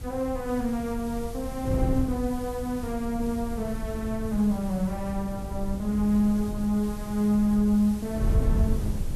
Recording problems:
hiss; slope 0 dB per octave, SNR 20 dB
wind noise; below 110 Hz, SNR 6 dB

